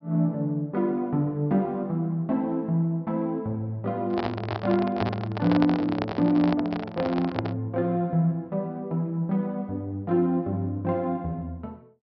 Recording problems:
low-pass filter; nothing above 5.5 kHz
handling noise; from 4 to 7.5 s; peak +2 dB vs average level

